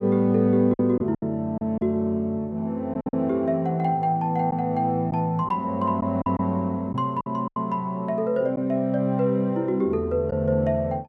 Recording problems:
packet loss; 5% of the sound replaced, filled with silence

